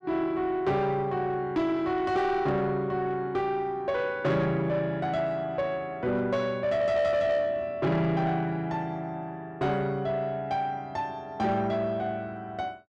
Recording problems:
distorted audio; soft clipping, signal-to-distortion ratio 12 dB

